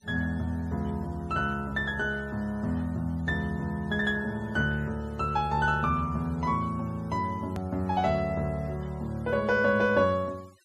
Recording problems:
noise reduction artefacts; signal-to-artefact ratio 27 dB
hard cut with a click; at 7.5 s

